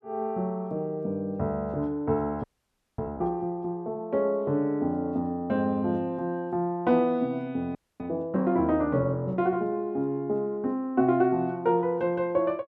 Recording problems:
audio freezing; at 2.5 s for 0.5 s and at 8 s

